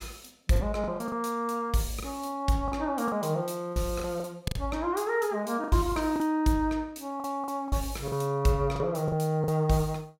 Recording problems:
lost packets; 9% of the sound replaced, filled with the last packet

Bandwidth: 16.5 kHz